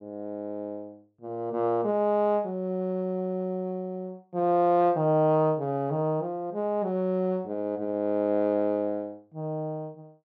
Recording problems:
low-pass filter; nothing above 7.7 kHz

